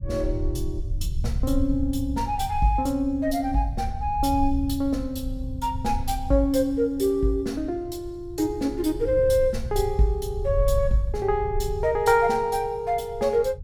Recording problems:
low-frequency rumble; below 86 Hz, SNR 8 dB

